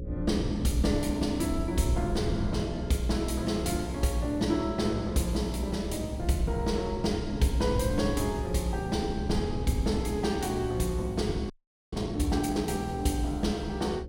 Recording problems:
hum; 60 Hz, harmonics up to 540 Hz, SNR 13 dB
rumble; below 110 Hz, SNR 8 dB
audio freezing; at 12 s

